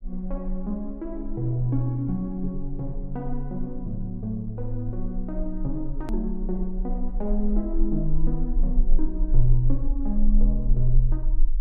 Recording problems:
rumble; below 32 Hz, strongest tone 18 Hz, SNR 1 dB
click at an edit; at 6 s

